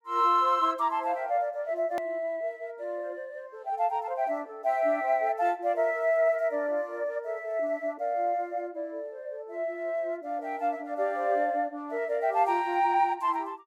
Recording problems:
click at an edit; at 2 s

